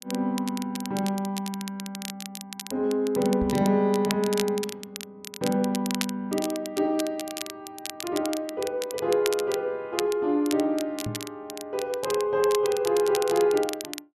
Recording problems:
crackling; vinyl, SNR 11 dB
knock on the microphone; at 3.5 s and at 11 s; peak -3 dB vs average level

